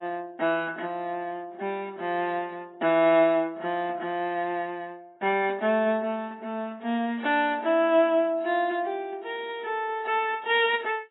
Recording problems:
codec artefacts; AAC, log-spectral distance 2 dB, nothing above 3.3 kHz

